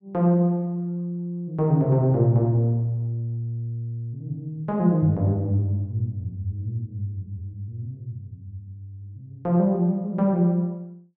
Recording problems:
none

